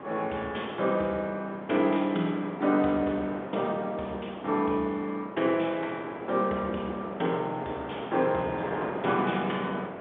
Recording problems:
telephone audio; 220 Hz to 3.6 kHz, G.711
wind noise; below 930 Hz, SNR 10 dB

